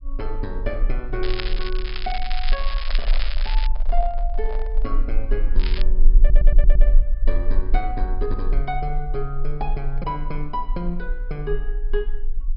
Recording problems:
treble missing; nothing above 5.5 kHz
low-frequency rumble; below 34 Hz, strongest tone 18 Hz, SNR -5 dB
crackle; from 1 to 3.5 s and at 5.5 s; loose cable, SNR 3 dB
handling noise; from 2.5 to 5 s; peak -4 dB vs average level
stutter; at 6 s

